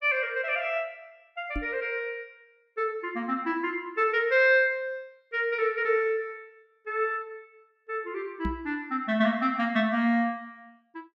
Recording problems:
microphone thump; at 1.5 s and at 8.5 s; peak -1 dB vs average level

